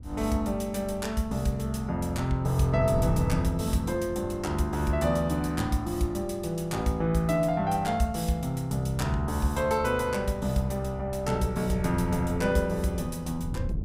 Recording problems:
wind on the microphone; below 140 Hz, SNR 14 dB

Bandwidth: 15.5 kHz